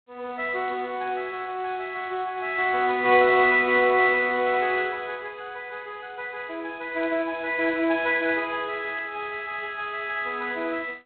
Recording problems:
phone line; 280 Hz to 3.9 kHz, G.726
static burst; at 9 s; peak -18 dB vs average level

